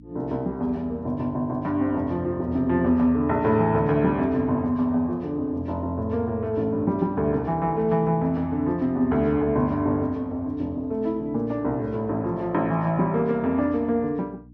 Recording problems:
hum; 60 Hz, harmonics up to 300 Hz, SNR 24 dB

